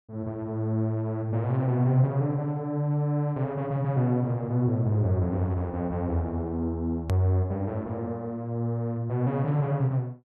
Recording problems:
treble cut off; nothing above 5.4 kHz
edit click; at 7 s

